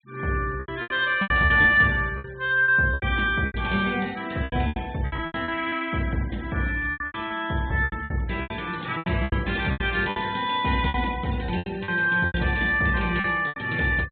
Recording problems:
low-pass filter; nothing above 4 kHz
denoising artefacts; signal-to-artefact ratio 23 dB
lost packets; 15% of the sound replaced, filled with repeated pitch periods

